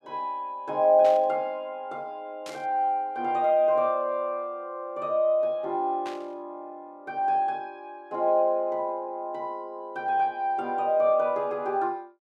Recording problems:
burst of static; at 1 s, at 2.5 s and at 6 s; peak -10 dB vs average level

